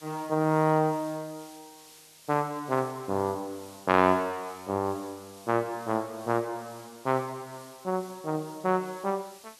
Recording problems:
background hiss; slope +1 dB per octave, SNR 21 dB

